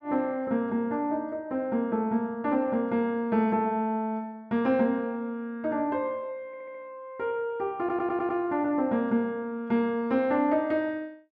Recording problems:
audio stuttering; at 6.5 s and at 8 s

